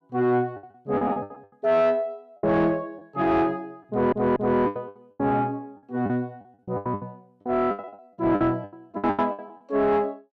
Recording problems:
distorted audio; soft clipping, signal-to-distortion ratio 11 dB
lost packets; 16% of the sound replaced, filled with the last packet
stutter; at 4 s

